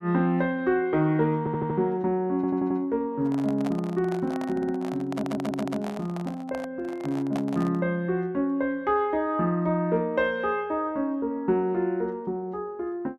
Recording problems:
audio stuttering; 4 times, first at 1.5 s
handling noise; from 3 to 8 s; peak -3 dB vs average level

